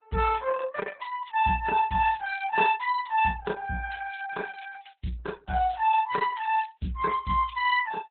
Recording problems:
codec artefacts; MP3, then Opus, log-spectral distance 5 dB, nothing above 4 kHz

